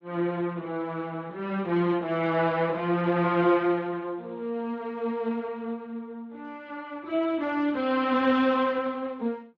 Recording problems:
lossy compression; Speex, log-spectral distance 2 dB

